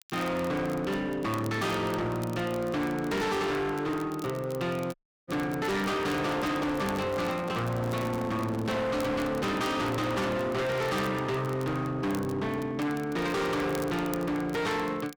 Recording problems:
distortion; hard clipping, uneven, signal-to-distortion ratio 5 dB
crackling; vinyl, SNR 21 dB
audio cutting out; at 5 s
handling noise; from 6 to 9 s; peak -7 dB vs average level

